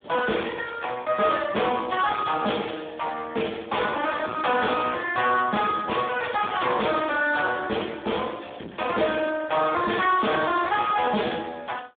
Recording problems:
phone line; 190 Hz to 3.7 kHz, Speex
distorted audio; hard clipping, signal-to-distortion ratio 10 dB

